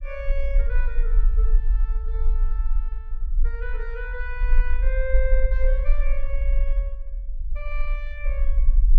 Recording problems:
low-frequency rumble; below 42 Hz, strongest tone 18 Hz, SNR -9 dB

